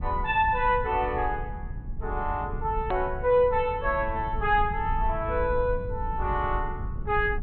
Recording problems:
treble missing; nothing above 4.1 kHz
rumble; below 80 Hz, SNR 9 dB
hard cut with a click; at 3 s

